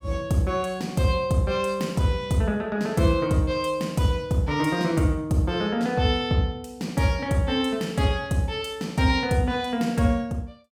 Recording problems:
none

